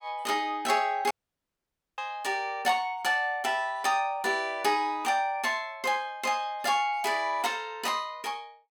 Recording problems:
dropout; at 1 s for 1 s

